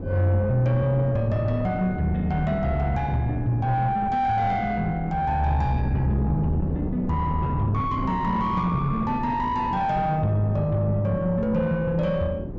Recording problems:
low-pass filter; nothing above 8 kHz
distortion; soft clipping, signal-to-distortion ratio 11 dB
wind on the microphone; below 280 Hz, SNR 8 dB

